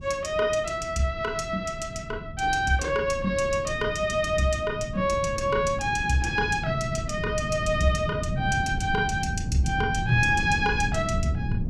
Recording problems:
low-frequency rumble; below 180 Hz, SNR 8 dB

